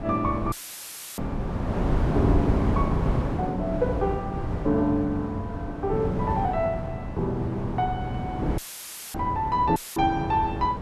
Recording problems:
wind on the microphone; below 320 Hz, SNR 2 dB
dropout; at 0.5 s for 0.5 s, at 8.5 s for 0.5 s and at 10 s; filled with static

